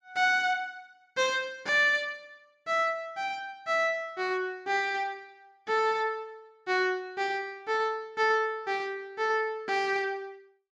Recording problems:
none

